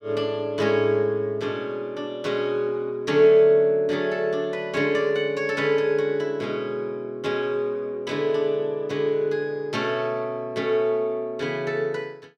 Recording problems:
none

